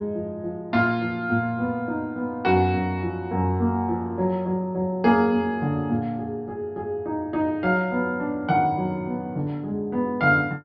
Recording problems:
treble missing; nothing above 5.5 kHz

